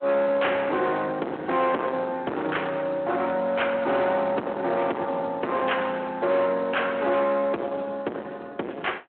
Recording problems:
phone line; 240 Hz to 3.2 kHz, Speex
distortion; soft clipping, signal-to-distortion ratio 7 dB

